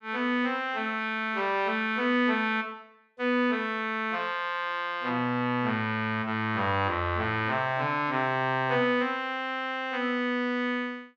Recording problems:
none

